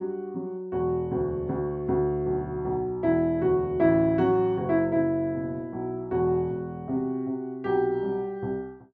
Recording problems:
none

